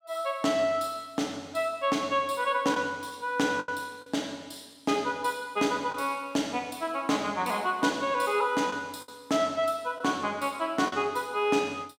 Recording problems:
lost packets; 3% of the sound replaced, filled with the last packet

